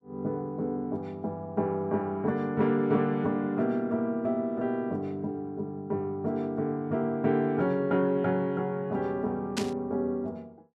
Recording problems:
static burst; at 9.5 s; peak 0 dB vs average level

